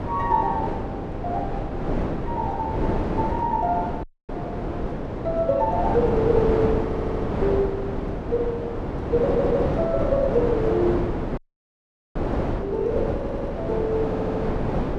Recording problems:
wind on the microphone; below 540 Hz, SNR 2 dB
dropout; at 4 s and at 11 s for 1 s
audio stuttering; 4 times, first at 7 s

